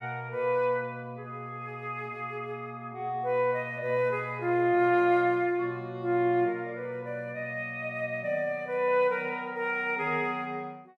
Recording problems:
none

